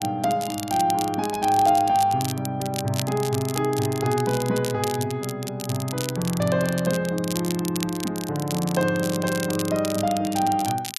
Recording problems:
crackle; vinyl, SNR 10 dB

